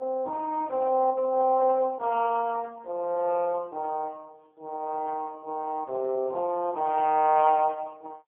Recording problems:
telephone audio; 280 Hz to 2 kHz, AMR-NB, then MP3

